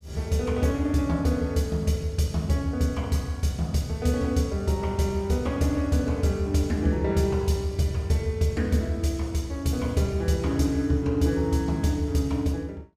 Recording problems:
none

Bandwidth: 15.5 kHz